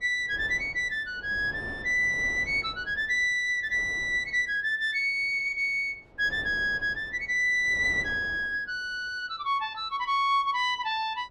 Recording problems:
wind noise; below 650 Hz, SNR 19 dB

